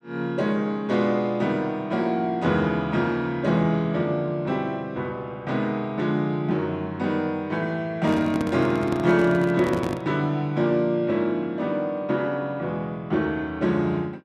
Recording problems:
handling noise; from 8 to 10 s; peak -1 dB vs average level

